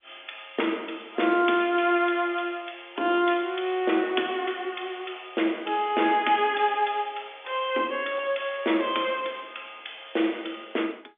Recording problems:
telephone audio; 240 Hz to 3.6 kHz, G.711

